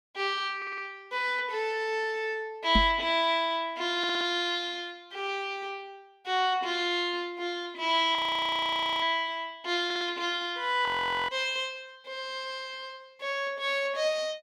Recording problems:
stutter; at 0.5 s, at 4 s and at 10 s
microphone bump; at 3 s; peak +5 dB vs average level
frozen audio; at 8 s for 1 s and at 11 s

